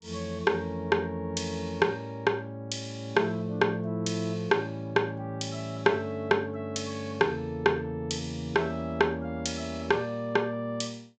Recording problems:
treble cut off; nothing above 8 kHz

